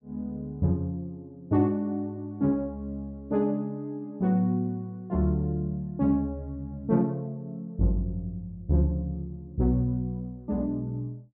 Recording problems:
none

